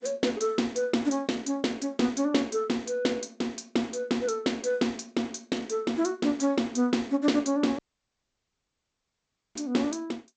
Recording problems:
lossy codec; G.722, log-spectral distance 4 dB, nothing above 7.6 kHz
dropout; at 8 s for 2 s

